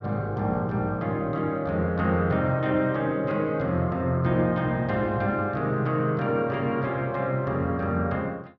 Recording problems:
none

